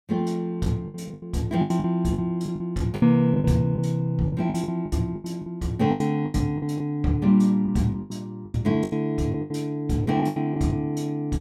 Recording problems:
lost packets; 14% of the sound replaced, filled with the last packet

